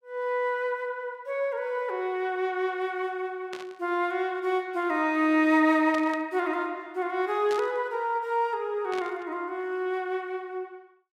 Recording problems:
static burst; 4 times, first at 3.5 s; peak -7 dB vs average level

